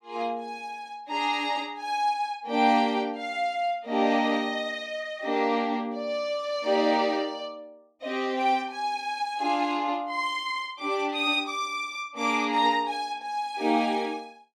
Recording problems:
none

